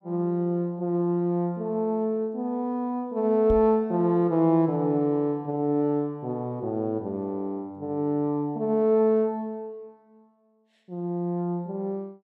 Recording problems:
knock on the microphone; at 3.5 s; peak -2 dB vs average level

